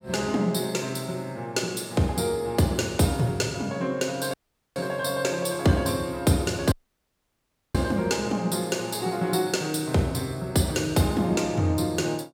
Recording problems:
audio cutting out; at 4.5 s and at 6.5 s for 1 s

